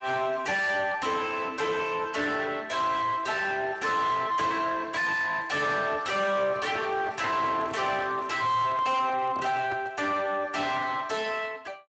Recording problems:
lossy compression; Speex, log-spectral distance 4 dB, nothing above 7.6 kHz
distortion; soft clipping, signal-to-distortion ratio 6 dB
handling noise; from 6.5 to 10 s; peak -6 dB vs average level

